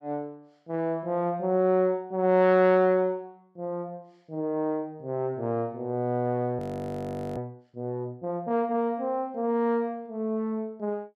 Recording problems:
frozen audio; at 6.5 s for 1 s

